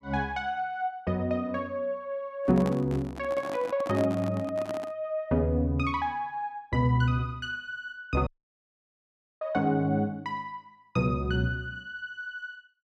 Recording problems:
microphone handling noise; from 2.5 to 5 s; peak -3 dB vs average level
audio cutting out; at 8.5 s for 1 s

